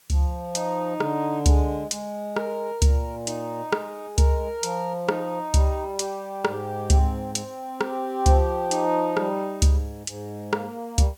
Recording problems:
hiss; slope 0 dB per octave, SNR 29 dB

